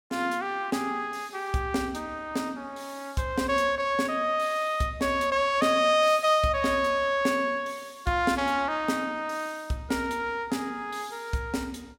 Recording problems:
none

